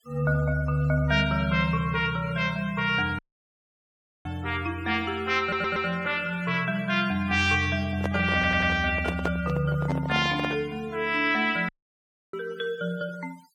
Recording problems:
denoising artefacts; signal-to-artefact ratio 23 dB
audio cutting out; at 3 s for 1 s and at 12 s for 0.5 s
audio stuttering; at 5.5 s and at 8.5 s
handling noise; from 8 to 11 s; peak 0 dB vs average level

